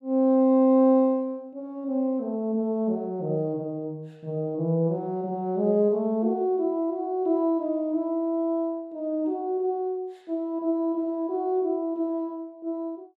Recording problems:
none

